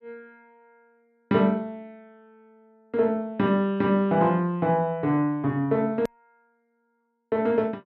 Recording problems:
click at an edit; at 6 s

